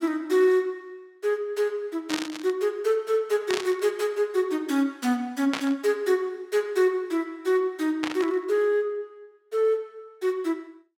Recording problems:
burst of static; 4 times, first at 2 s; peak +1 dB vs average level

